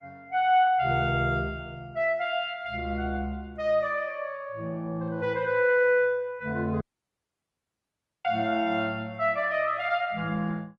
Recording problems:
codec artefacts; Opus, log-spectral distance 2 dB
dropout; at 7 s for 1.5 s

